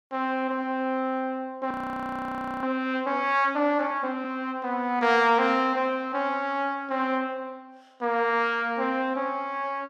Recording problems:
frozen audio; at 1.5 s for 1 s

